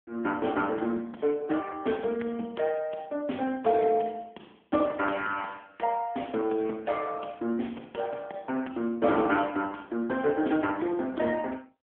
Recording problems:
telephone audio; 190 Hz to 3.4 kHz, AMR-NB

